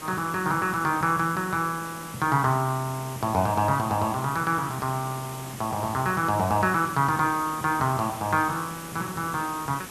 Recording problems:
hiss; slope -3 dB per octave, SNR 13 dB

